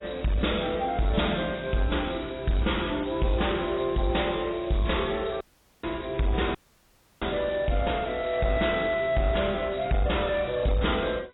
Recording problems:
lossy compression; AAC, log-spectral distance 9 dB, nothing above 3.8 kHz
distortion; soft clipping, signal-to-distortion ratio 10 dB
audio cutting out; at 5.5 s and at 6.5 s for 0.5 s

